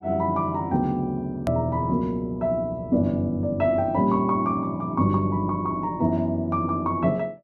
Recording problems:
edit click; at 1.5 s

